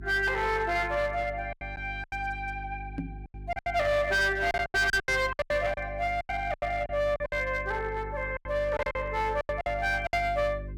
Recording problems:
distortion; hard clipping, uneven, signal-to-distortion ratio 9 dB
electrical hum; 50 Hz, harmonics up to 400 Hz, SNR 13 dB
lost packets; 13% of the sound replaced, filled with silence
knock on the microphone; at 3 s; peak -1 dB vs average level

